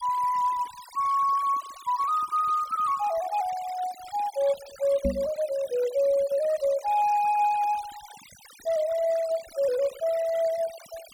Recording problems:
denoising artefacts; signal-to-artefact ratio 19 dB
knock on the microphone; at 5 s; peak +1 dB vs average level

